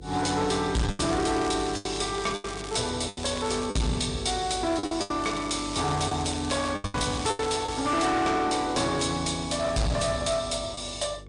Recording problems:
codec artefacts; MP3, log-spectral distance 6 dB, nothing above 9 kHz
distorted audio; hard clipping, uneven, signal-to-distortion ratio 7 dB
mains hum; 50 Hz, harmonics up to 500 Hz, SNR 18 dB
lost packets; 8% of the sound replaced, filled with the last packet
crackling; from 1 to 3 s, at 3 s and from 5 to 8 s; loose cable, SNR 14 dB

